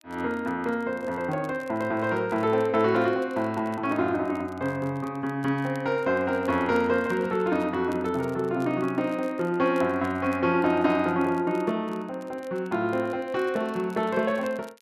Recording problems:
crackle; vinyl, SNR 29 dB

